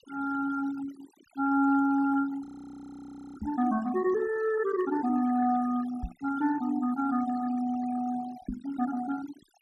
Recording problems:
noise reduction artefacts; signal-to-artefact ratio 17 dB
audio freezing; at 2.5 s for 1 s
microphone thump; at 3.5 s, at 6 s and at 8.5 s; peak -2 dB vs average level

